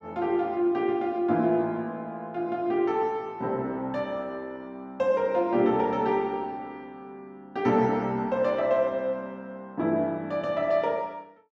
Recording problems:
none

